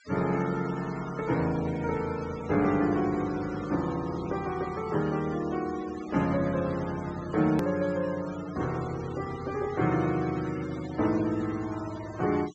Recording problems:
treble missing; nothing above 8 kHz
denoising artefacts; signal-to-artefact ratio 16 dB
hard cut with a click; at 7.5 s

